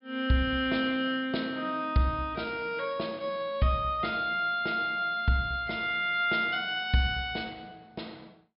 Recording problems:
treble cut off; nothing above 5.5 kHz

